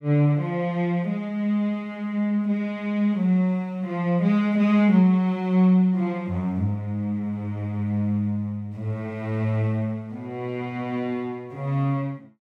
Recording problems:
none

